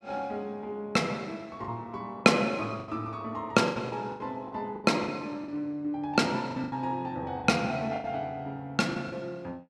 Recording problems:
packet loss; 9% of the sound replaced, filled with the last packet

